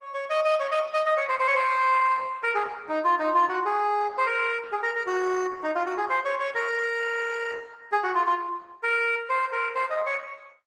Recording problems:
lossy compression; Opus, log-spectral distance 4 dB

